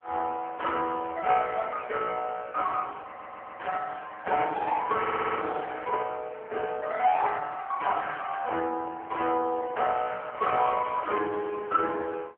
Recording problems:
telephone audio; 340 Hz to 3.3 kHz, AMR-NB
audio stuttering; at 3 s and at 5 s

